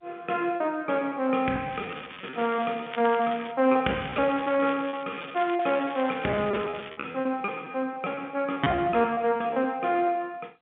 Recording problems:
phone line; 220 Hz to 3.6 kHz, G.711
lost packets; 16% of the sound replaced, filled with repeated pitch periods
crackle; from 1.5 to 3.5 s and from 4 to 7 s; loose cable, SNR 15 dB

